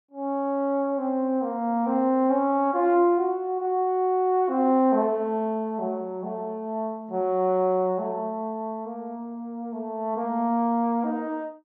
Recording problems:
none

